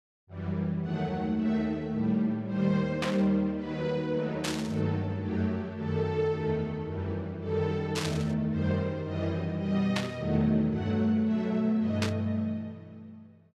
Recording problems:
static burst; 5 times, first at 3 s; peak +2 dB vs average level

